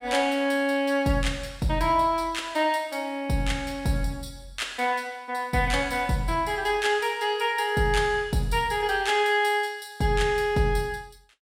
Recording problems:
none

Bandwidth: 16 kHz